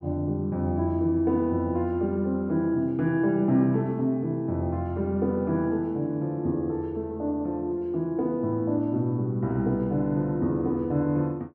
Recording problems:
none

